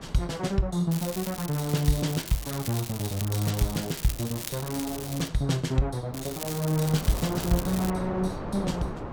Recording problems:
wind noise; below 730 Hz, SNR 11 dB
crackle; from 1 to 5.5 s and from 6 to 8 s; loose cable, SNR 9 dB

